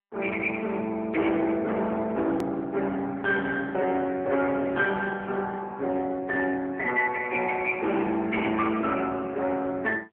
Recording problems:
phone line; 240 Hz to 3.1 kHz, AMR-NB
distorted audio; hard clipping, signal-to-distortion ratio 14 dB
edit click; at 2.5 s

